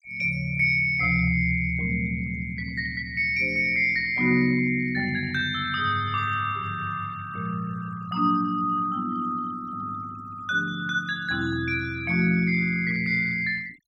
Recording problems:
noise reduction artefacts; signal-to-artefact ratio 24 dB

